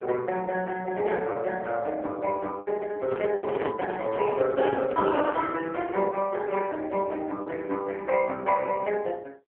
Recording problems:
telephone audio; 220 Hz to 3.3 kHz, AMR-NB
packet loss; 3% of the sound replaced, filled with the last packet
handling noise; from 3 to 5.5 s; peak +3 dB vs average level

